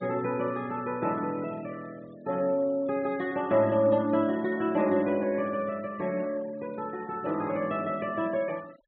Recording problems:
treble cut off; nothing above 4 kHz
denoising artefacts; signal-to-artefact ratio 23 dB

